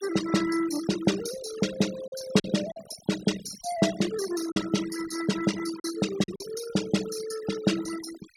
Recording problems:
denoising artefacts; signal-to-artefact ratio 10 dB
packet loss; 3% of the sound replaced, filled with silence

